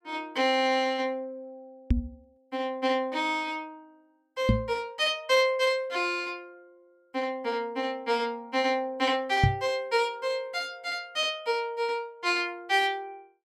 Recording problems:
knock on the microphone; at 2 s, at 4.5 s and at 9.5 s; peak +8 dB vs average level

